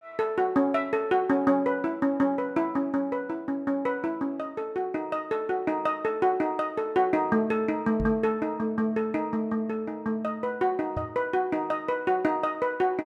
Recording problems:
microphone thump; at 8 s and at 11 s; peak -2 dB vs average level

